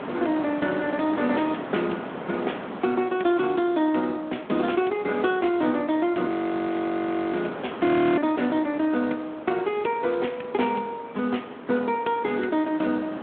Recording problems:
phone line; 190 Hz to 3.7 kHz, Speex
wind on the microphone; below 1.1 kHz, SNR 12 dB
frozen audio; at 6.5 s for 1 s and at 8 s

